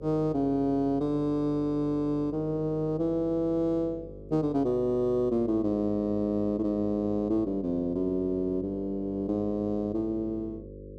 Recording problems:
electrical hum; 50 Hz, harmonics up to 550 Hz, SNR 16 dB

